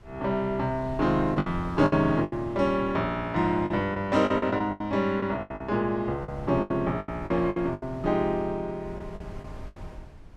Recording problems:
wind noise; below 160 Hz, SNR 18 dB
lost packets; 12% of the sound replaced, filled with the last packet

